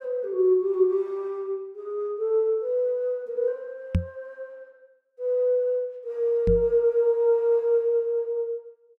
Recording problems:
knock on the microphone; at 4 s and at 6.5 s; peak +5 dB vs average level

